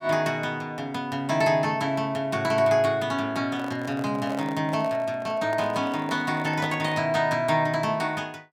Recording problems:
microphone handling noise; from 3.5 to 7 s; peak -3 dB vs average level

